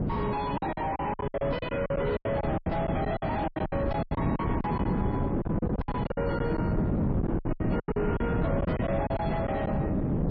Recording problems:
lossy compression; MP3, log-spectral distance 2 dB, nothing above 4.5 kHz
distorted audio; soft clipping, signal-to-distortion ratio 6 dB
wind noise; below 350 Hz, SNR -1 dB
packet loss; 17% of the sound replaced, filled with silence

